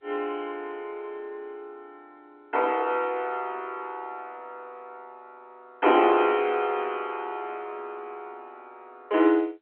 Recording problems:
telephone audio; 260 Hz to 3.2 kHz, G.711

